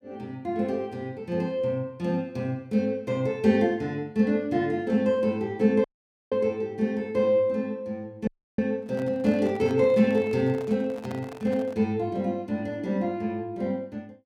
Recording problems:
dropout; at 6 s and at 8.5 s
handling noise; from 9 to 12 s; peak -10 dB vs average level

